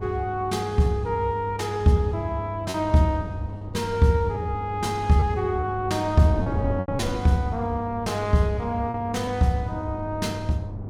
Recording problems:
hum; 50 Hz, harmonics up to 500 Hz, SNR 10 dB
wind on the microphone; below 320 Hz, SNR 14 dB
lost packets; 4% of the sound replaced, filled with repeated pitch periods

